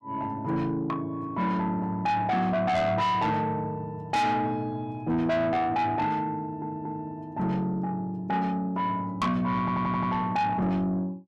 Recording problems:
distortion; soft clipping, signal-to-distortion ratio 7 dB
audio stuttering; at 6.5 s and at 9.5 s

